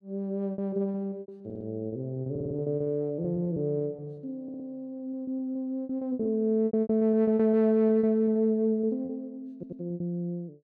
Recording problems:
packet loss; 15% of the sound replaced, filled with repeated pitch periods
audio stuttering; 4 times, first at 1.5 s

